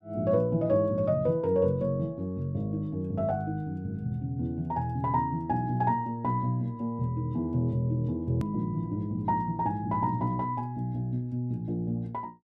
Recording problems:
hard cut with a click; at 8.5 s

